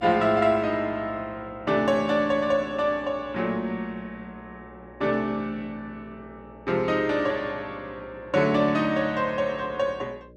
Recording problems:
hum; 60 Hz, harmonics up to 600 Hz, SNR 24 dB

